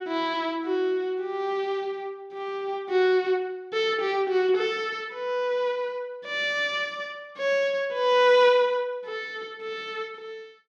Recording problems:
none

